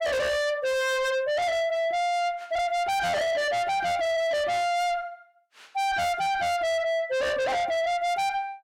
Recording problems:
distorted audio; soft clipping, signal-to-distortion ratio 6 dB

